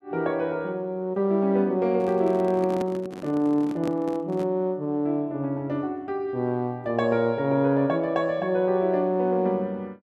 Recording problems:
handling noise; from 2 to 4.5 s; peak -4 dB vs average level

